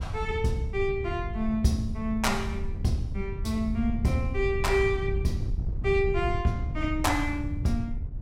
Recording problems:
wind on the microphone; below 100 Hz, SNR 4 dB

